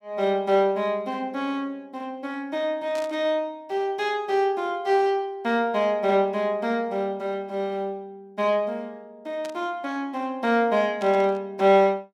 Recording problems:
static burst; at 3 s, at 9.5 s and at 11 s; peak -12 dB vs average level

